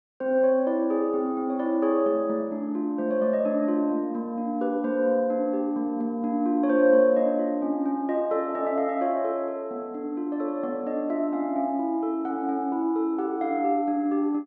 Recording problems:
none

